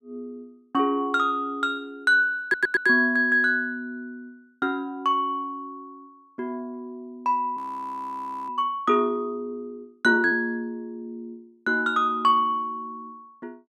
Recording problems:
audio stuttering; at 2.5 s
audio freezing; at 7.5 s for 1 s

